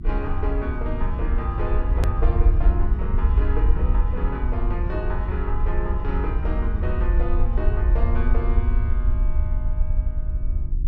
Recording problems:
hum; 50 Hz, harmonics up to 350 Hz, SNR 5 dB
rumble; below 62 Hz, SNR -7 dB
edit click; at 2 s

